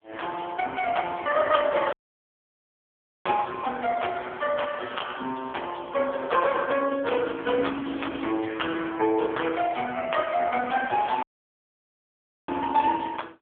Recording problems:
telephone audio; 190 Hz to 3.4 kHz, AMR-NB
dropout; at 2 s for 1.5 s and at 11 s for 1.5 s

